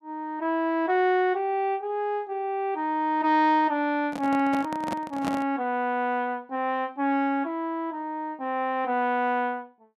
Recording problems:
microphone handling noise; from 4 to 5.5 s; peak -1 dB vs average level

